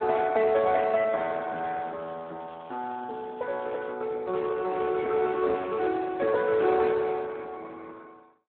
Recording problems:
telephone audio; 280 Hz to 2.6 kHz, Speex
crackle; from 1 to 4 s and from 4.5 to 6.5 s; loose cable, SNR 28 dB

